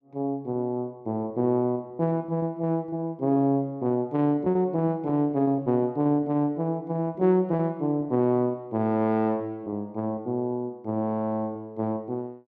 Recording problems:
lost packets; 8% of the sound replaced, filled with repeated pitch periods

